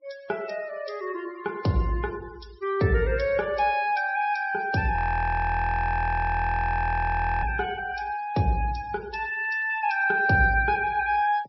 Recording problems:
treble cut off; nothing above 5.6 kHz
denoising artefacts; signal-to-artefact ratio 23 dB
audio freezing; at 5 s for 2.5 s

